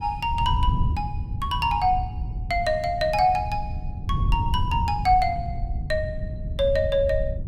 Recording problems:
wind noise; below 110 Hz, SNR 5 dB

